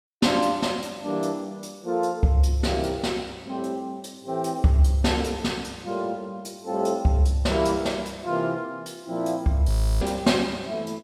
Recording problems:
frozen audio; at 9.5 s

